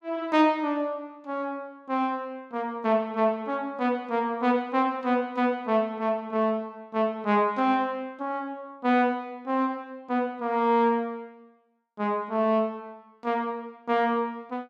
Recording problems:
none

